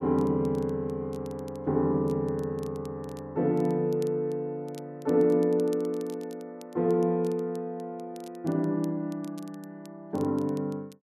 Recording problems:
crackle; vinyl, SNR 27 dB

